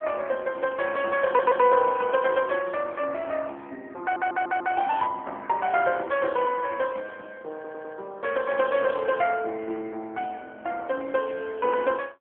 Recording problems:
phone line; 240 Hz to 2.8 kHz, AMR-NB
stutter; at 1.5 s, at 4 s and at 7.5 s

